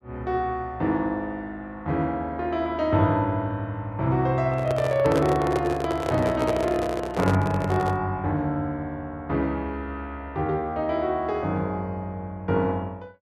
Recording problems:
handling noise; from 4.5 to 8 s; peak +2 dB vs average level

